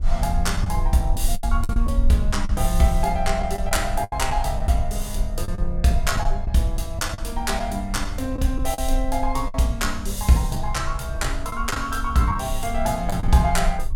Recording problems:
rumble; below 52 Hz, strongest tone 20 Hz, SNR 4 dB
packet loss; 7% of the sound replaced, filled with the last packet

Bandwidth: 17 kHz